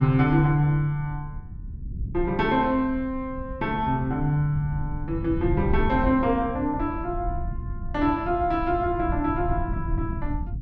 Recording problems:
low-frequency rumble; below 110 Hz, SNR 8 dB

